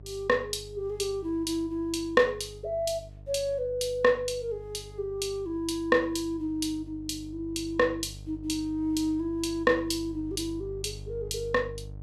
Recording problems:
electrical hum; 50 Hz, harmonics up to 600 Hz, SNR 16 dB

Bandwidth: 14 kHz